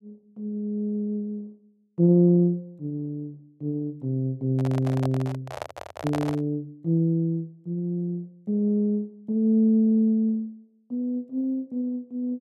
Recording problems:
handling noise; from 4.5 to 6.5 s; peak -2 dB vs average level

